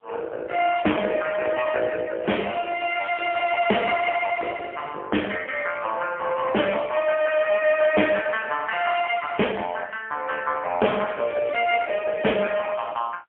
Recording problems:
telephone audio; 320 Hz to 3.1 kHz, AMR-NB, then MP3
distortion; soft clipping, signal-to-distortion ratio 10 dB

